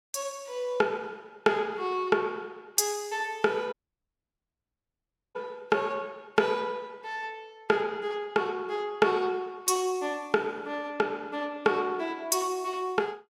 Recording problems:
dropout; at 3.5 s for 1.5 s

